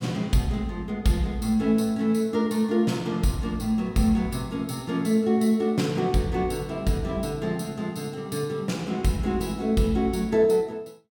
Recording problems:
none

